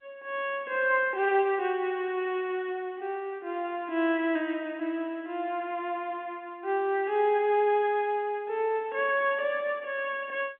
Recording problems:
telephone audio; 190 Hz to 3.4 kHz, G.711

